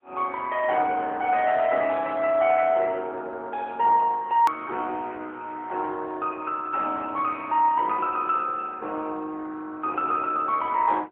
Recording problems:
phone line; 280 Hz to 3.3 kHz, AMR-NB
edit click; at 4.5 s

